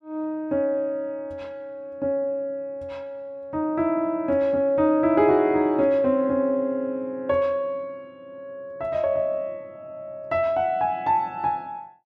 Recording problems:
none

